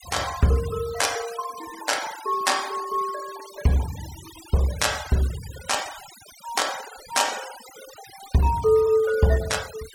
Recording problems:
noise reduction artefacts; signal-to-artefact ratio 14 dB

